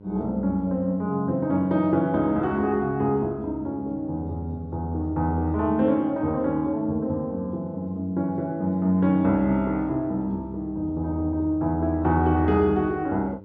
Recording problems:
hum; 50 Hz, harmonics up to 1 kHz, SNR 21 dB

